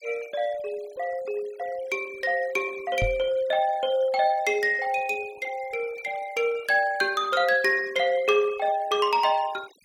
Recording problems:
noise reduction artefacts; signal-to-artefact ratio 23 dB
microphone thump; at 3 s; peak 0 dB vs average level

